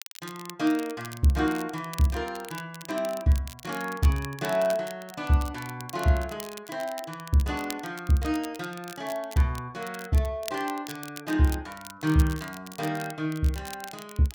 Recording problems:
crackling; vinyl, SNR 15 dB

